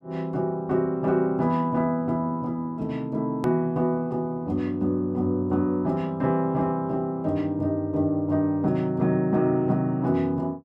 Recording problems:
edit click; at 3.5 s

